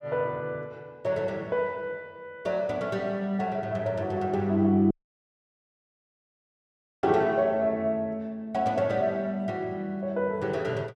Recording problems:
audio cutting out; at 5 s for 2 s

